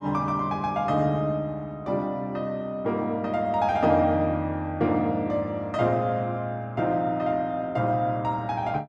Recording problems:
none

